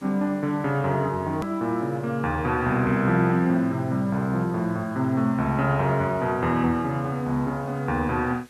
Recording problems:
hiss; slope -1 dB per octave, SNR 29 dB
hard cut with a click; at 1.5 s

